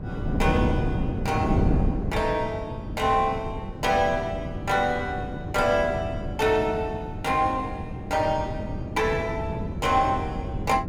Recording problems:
electrical hum; 50 Hz, harmonics up to 1.1 kHz, SNR 18 dB
wind noise; below 260 Hz, SNR 4 dB

